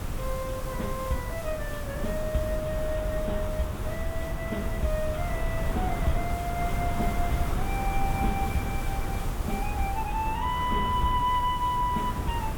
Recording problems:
codec artefacts; AAC, log-spectral distance 2 dB
hiss; slope -2 dB per octave, SNR 13 dB
wind on the microphone; below 170 Hz, SNR 2 dB

